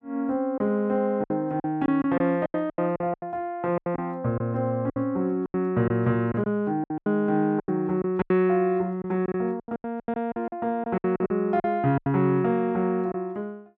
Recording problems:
lost packets; 13% of the sound replaced, filled with silence

